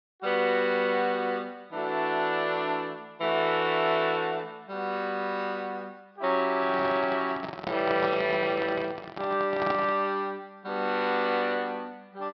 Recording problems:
low-pass filter; nothing above 5.5 kHz
microphone handling noise; from 6.5 to 10 s; peak -1 dB vs average level

